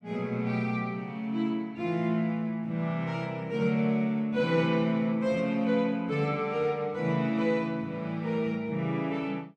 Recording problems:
none

